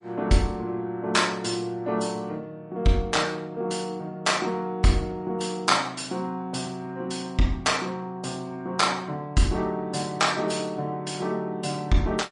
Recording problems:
codec artefacts; MP3, log-spectral distance 3 dB, nothing above 10.4 kHz

